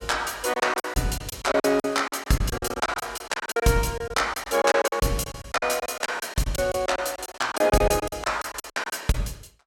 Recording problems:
lost packets; 18% of the sound replaced, filled with silence

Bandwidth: 16.5 kHz